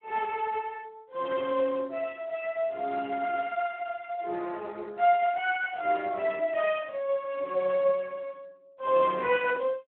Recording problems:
telephone audio; 280 Hz to 3.3 kHz, Speex

